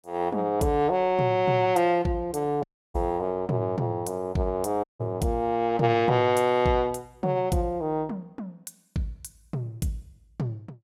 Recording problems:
dropout; at 2.5 s and at 5 s

